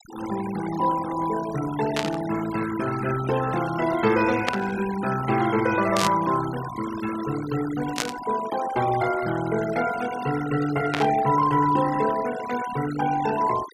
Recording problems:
noise reduction artefacts; signal-to-artefact ratio 12 dB
static burst; 5 times, first at 2 s; peak +4 dB vs average level

